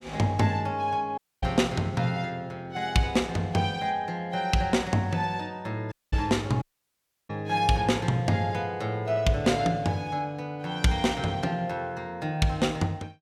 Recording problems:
audio cutting out; at 1 s, at 6 s and at 6.5 s for 0.5 s

